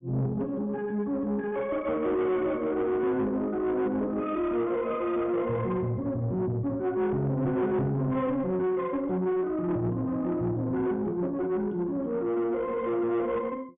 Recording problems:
low-pass filter; nothing above 3.6 kHz
distorted audio; soft clipping, signal-to-distortion ratio 11 dB

